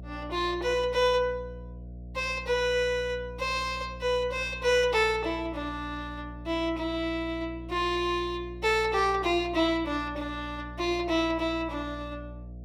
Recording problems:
electrical hum; 60 Hz, harmonics up to 720 Hz, SNR 14 dB

